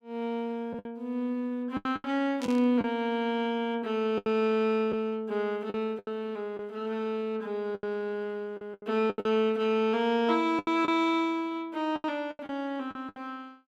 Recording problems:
lost packets; 9% of the sound replaced, filled with the last packet
static burst; at 2.5 s; peak -7 dB vs average level

